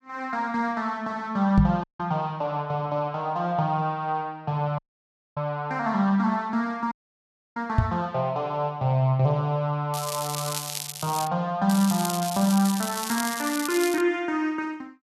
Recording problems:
microphone thump; at 1.5 s and at 8 s; peak +8 dB vs average level
dropout; at 2 s, at 5 s for 0.5 s and at 7 s for 0.5 s
crackling; from 10 to 11 s and from 12 to 14 s; loose cable, SNR 6 dB

